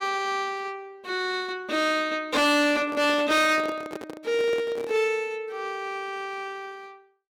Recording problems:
distorted audio; hard clipping, signal-to-distortion ratio 7 dB
microphone handling noise; from 2.5 to 5 s; peak -6 dB vs average level

